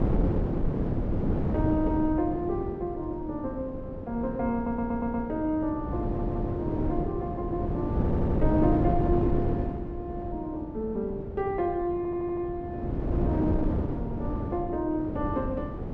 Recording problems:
wind on the microphone; below 310 Hz, SNR 0 dB
audio stuttering; 4 times, first at 4.5 s

